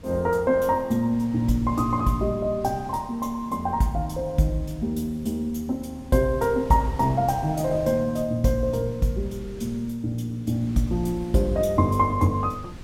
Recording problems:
wind noise; below 240 Hz, SNR 19 dB

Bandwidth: 16 kHz